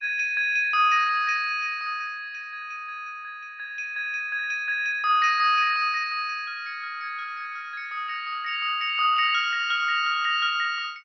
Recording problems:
lossy codec; MP2, log-spectral distance 3 dB, nothing above 5.8 kHz

